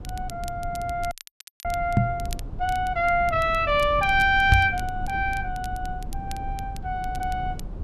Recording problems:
low-frequency rumble; below 110 Hz, SNR 11 dB
crackling; vinyl, SNR 21 dB
dropout; at 1 s for 0.5 s
microphone bump; at 2 s and at 4.5 s; peak +8 dB vs average level

